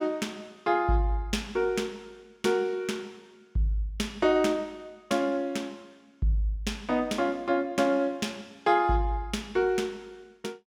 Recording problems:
none

